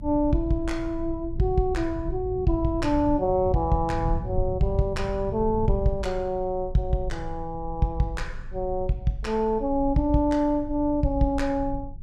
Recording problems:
rumble; below 96 Hz, strongest tone 22 Hz, SNR 10 dB

